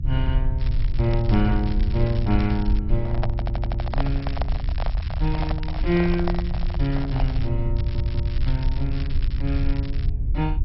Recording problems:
codec artefacts; MP2, log-spectral distance 2 dB, nothing above 5.5 kHz
low-frequency rumble; below 70 Hz, SNR 0 dB
crackle; from 0.5 to 3 s, from 3.5 to 7.5 s and from 8 to 10 s; loose cable, SNR 17 dB
handling noise; from 3 to 7.5 s; peak +2 dB vs average level
audio stuttering; at 3.5 s and at 8 s

